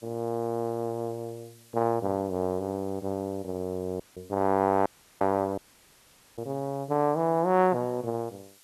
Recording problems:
hiss; slope +2 dB per octave, SNR 27 dB
audio cutting out; at 4 s, at 5 s and at 5.5 s for 1 s

